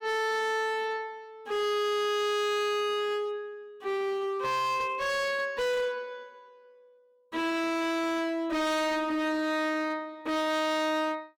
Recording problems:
distortion; hard clipping, signal-to-distortion ratio 7 dB

